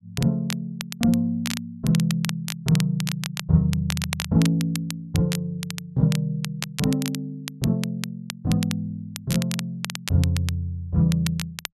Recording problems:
crackle; vinyl, SNR 9 dB

